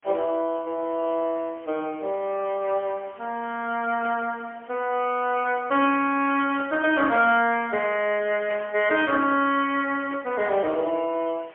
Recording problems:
phone line; 240 Hz to 3.3 kHz, AMR-NB, then MP3
background hiss; SNR 26 dB
static burst; 4 times, first at 4 s; peak -9 dB vs average level

